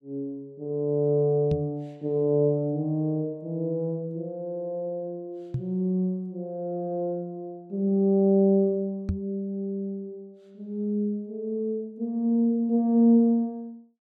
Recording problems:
microphone bump; at 1.5 s, at 5.5 s and at 9 s; peak +2 dB vs average level

